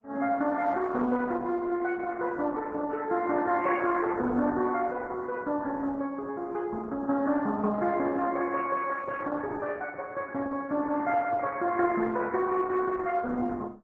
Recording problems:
lossy codec; MP3, then Opus, log-spectral distance 3 dB
microphone handling noise; from 9 to 12 s; peak -7 dB vs average level

